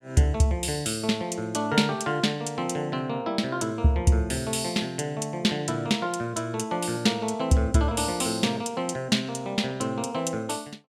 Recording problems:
none

